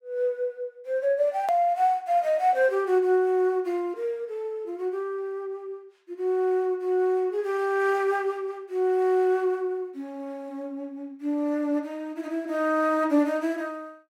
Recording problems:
edit click; at 1.5 s

